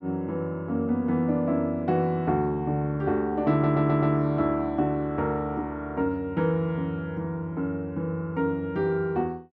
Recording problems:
stutter; at 3.5 s

